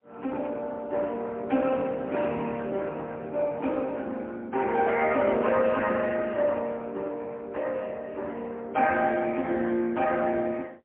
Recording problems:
telephone audio; 240 Hz to 3.1 kHz, AMR-NB, then MP3

